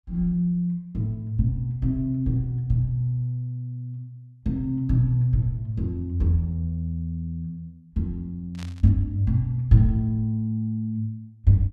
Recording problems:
burst of static; at 8.5 s; peak -13 dB vs average level

